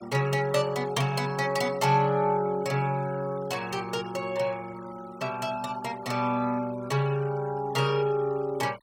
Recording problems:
denoising artefacts; signal-to-artefact ratio 21 dB

